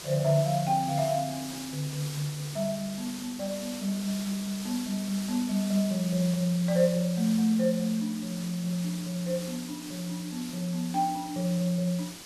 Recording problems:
background hiss; SNR 11 dB

